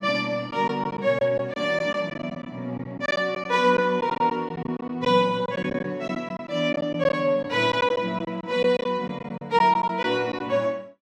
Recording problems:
lost packets; 9% of the sound replaced, filled with silence

